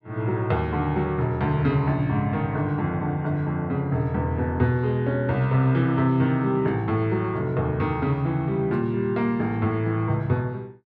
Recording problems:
none

